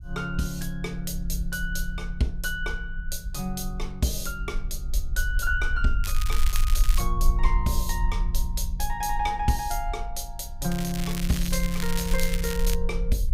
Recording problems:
low-frequency rumble; below 46 Hz, strongest tone 24 Hz, SNR 1 dB
crackle; at 6 s and from 11 to 13 s; loose cable, SNR 6 dB

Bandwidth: 15.5 kHz